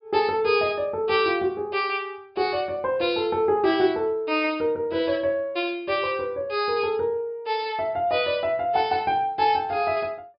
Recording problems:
low-pass filter; nothing above 5.5 kHz

